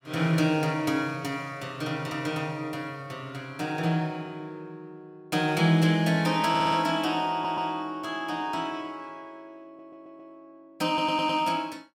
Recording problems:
audio stuttering; 4 times, first at 6.5 s

